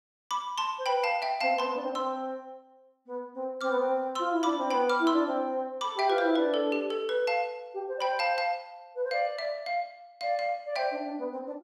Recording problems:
none

